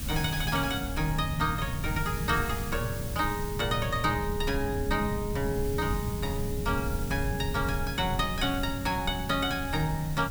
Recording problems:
background hiss; SNR 11 dB
low-frequency rumble; below 150 Hz, SNR 5 dB

